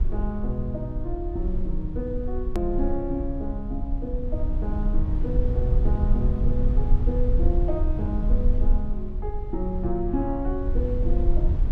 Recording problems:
low-frequency rumble; below 58 Hz, strongest tone 22 Hz, SNR -3 dB
hard cut with a click; at 2.5 s

